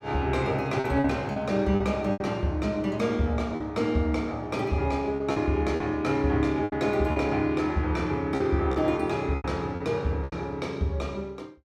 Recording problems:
lost packets; 7% of the sound replaced, filled with repeated pitch periods

